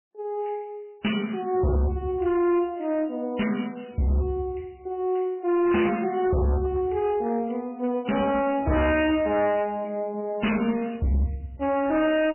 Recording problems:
codec artefacts; MP3, log-spectral distance 5 dB, nothing above 3 kHz
distorted audio; hard clipping, signal-to-distortion ratio 6 dB

